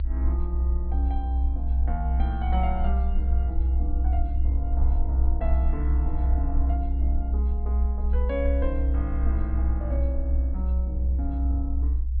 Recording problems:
treble missing; nothing above 4.7 kHz
low-frequency rumble; below 64 Hz, strongest tone 62 Hz, SNR -9 dB

